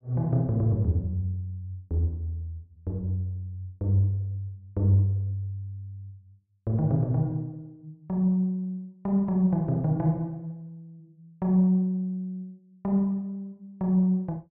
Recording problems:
none

